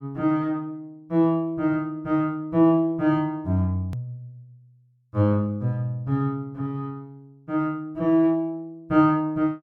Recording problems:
edit click; at 4 s

